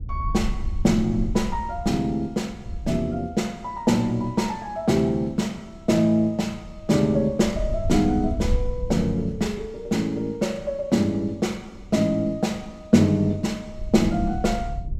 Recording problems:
wind noise; below 72 Hz, SNR 10 dB

